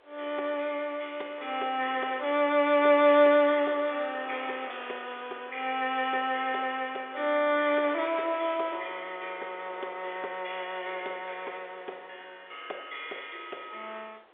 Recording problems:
phone line; 320 Hz to 3.7 kHz, G.711
wind noise; below 1.9 kHz, SNR 22 dB

